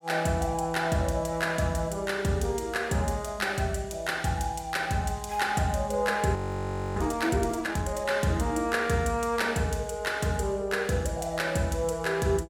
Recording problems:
frozen audio; at 6.5 s for 0.5 s

